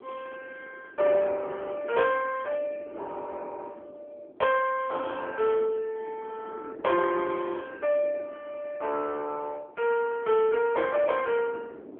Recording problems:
telephone audio; 300 Hz to 2.6 kHz, AMR-NB
wind on the microphone; below 490 Hz, SNR 19 dB

